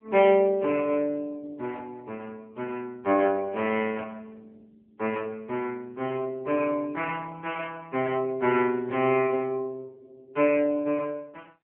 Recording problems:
telephone audio; 300 Hz to 3.1 kHz, AMR-NB

